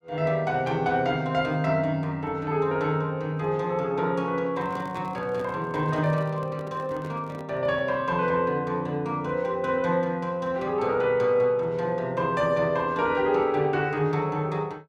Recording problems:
microphone handling noise; from 4.5 to 8 s; peak -11 dB vs average level

